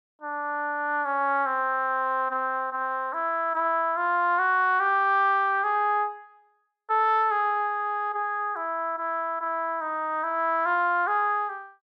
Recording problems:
none

